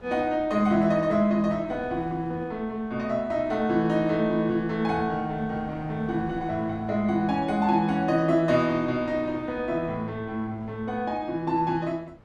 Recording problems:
wind noise; below 580 Hz, SNR 21 dB

